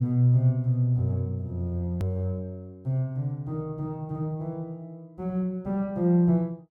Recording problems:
click at an edit; at 2 s

